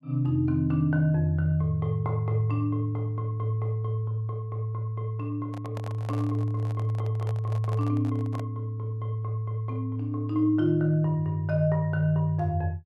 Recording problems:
handling noise; from 5.5 to 8.5 s; peak -9 dB vs average level

